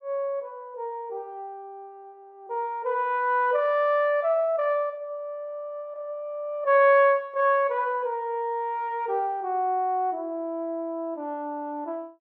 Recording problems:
none

